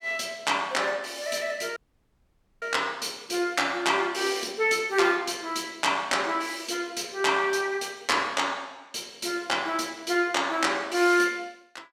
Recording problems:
dropout; at 2 s for 1 s

